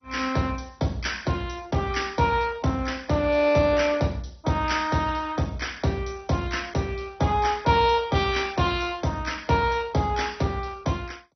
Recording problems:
lossy codec; MP2, log-spectral distance 5 dB, nothing above 6 kHz

